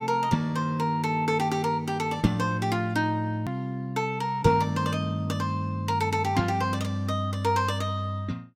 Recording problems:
click at an edit; at 3.5 s

